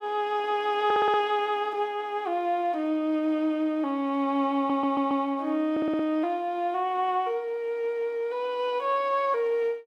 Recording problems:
stutter; at 1 s, at 4.5 s and at 5.5 s

